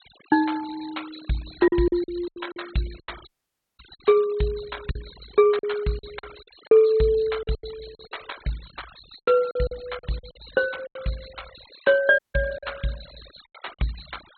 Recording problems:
treble missing; nothing above 4.2 kHz
noise reduction artefacts; signal-to-artefact ratio 21 dB
lost packets; 10% of the sound replaced, filled with silence
audio cutting out; at 3.5 s for 0.5 s and at 12 s

